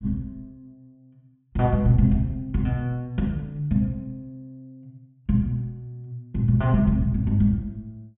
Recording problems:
treble cut off; nothing above 3.7 kHz

